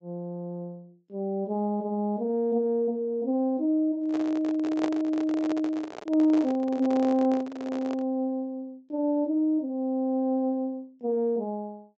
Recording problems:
treble cut off; nothing above 8 kHz
microphone handling noise; from 4 to 8 s; peak -1 dB vs average level

